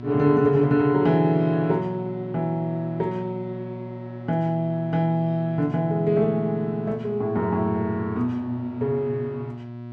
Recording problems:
electrical hum; 60 Hz, harmonics up to 1.3 kHz, SNR 13 dB

